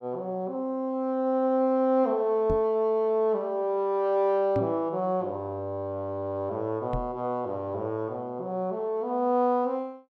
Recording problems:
microphone bump; at 2.5 s, at 4.5 s and at 7 s; peak 0 dB vs average level

